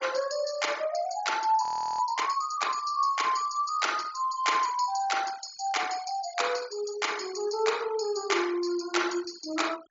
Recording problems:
low-pass filter; nothing above 7.5 kHz
noise reduction artefacts; signal-to-artefact ratio 17 dB
audio freezing; at 1.5 s

